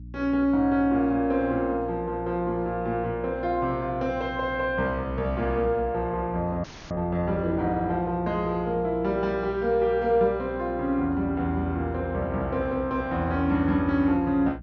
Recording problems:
treble missing; nothing above 6.7 kHz
hum; 60 Hz, harmonics up to 300 Hz, SNR 16 dB
frozen audio; at 6.5 s

